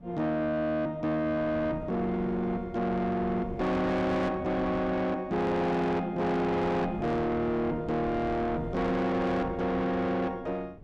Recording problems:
distortion; soft clipping, signal-to-distortion ratio 8 dB
wind on the microphone; below 380 Hz, SNR 13 dB

